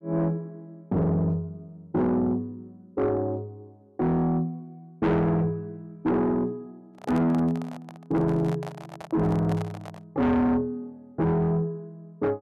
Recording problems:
distorted audio; soft clipping, signal-to-distortion ratio 8 dB
handling noise; from 7 to 10 s; peak -6 dB vs average level

